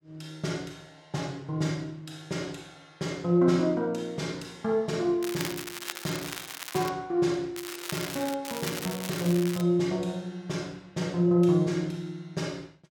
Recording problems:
crackle; from 5 to 7 s, at 7.5 s and from 8.5 to 9.5 s; loose cable, SNR 8 dB

